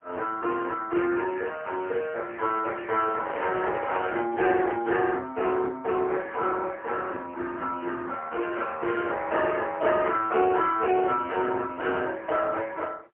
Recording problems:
telephone audio; 280 Hz to 3.3 kHz, AMR-NB, then MP3
handling noise; from 3 to 5 s; peak -3 dB vs average level

